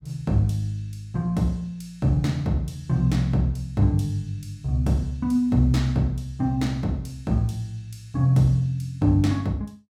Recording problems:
none

